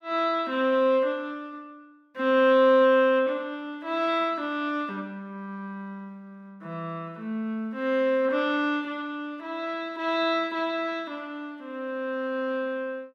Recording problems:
none

